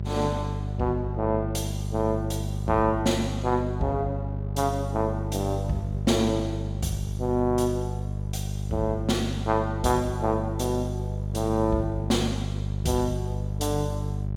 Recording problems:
hum; 50 Hz, harmonics up to 600 Hz, SNR 3 dB

